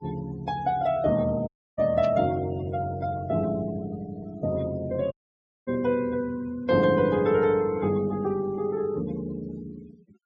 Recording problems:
treble cut off; nothing above 8 kHz
denoising artefacts; signal-to-artefact ratio 23 dB
dropout; at 1.5 s and at 5 s for 0.5 s
burst of static; at 2 s; peak -13 dB vs average level

